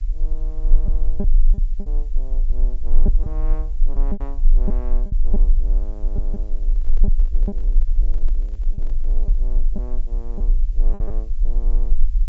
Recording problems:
low-pass filter; nothing above 8 kHz
hiss; SNR 22 dB
rumble; below 34 Hz, strongest tone 20 Hz, SNR -18 dB
lost packets; 6% of the sound replaced, filled with repeated pitch periods
microphone handling noise; from 6.5 to 9.5 s; peak 0 dB vs average level

